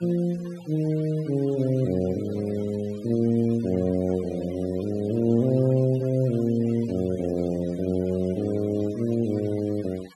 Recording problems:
denoising artefacts; signal-to-artefact ratio 23 dB

